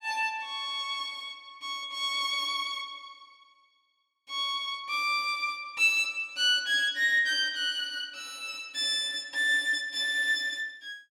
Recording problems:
none

